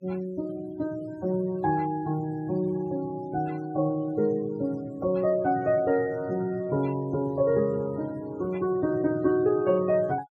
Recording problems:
denoising artefacts; signal-to-artefact ratio 23 dB

